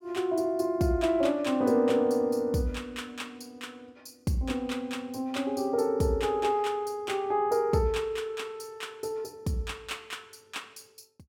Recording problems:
none

